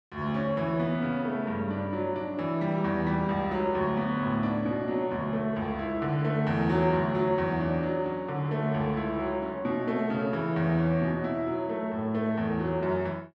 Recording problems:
none

